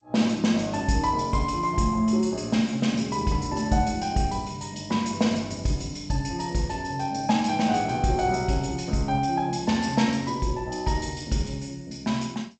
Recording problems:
lossy compression; G.722, log-spectral distance 4 dB, nothing above 7.6 kHz

